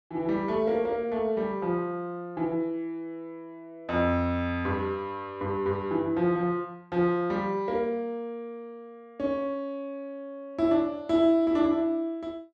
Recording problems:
none

